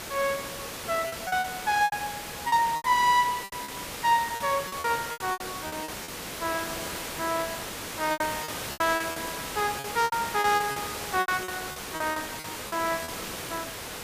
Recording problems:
background hiss; slope -3 dB per octave, SNR 7 dB
lost packets; 13% of the sound replaced, filled with repeated pitch periods

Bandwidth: 15 kHz